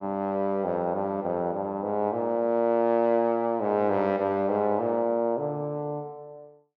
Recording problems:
none

